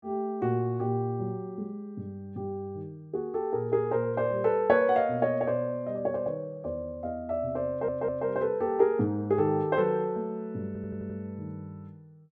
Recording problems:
stutter; at 7.5 s and at 11 s

